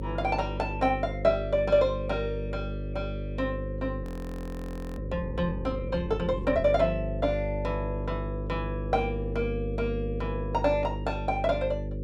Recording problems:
hum; 50 Hz, harmonics up to 550 Hz, SNR 5 dB
audio freezing; at 4 s for 1 s

